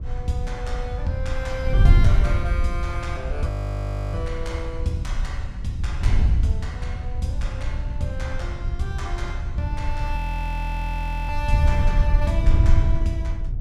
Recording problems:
wind noise; below 80 Hz, SNR -6 dB
frozen audio; at 3.5 s for 0.5 s and at 10 s for 1 s

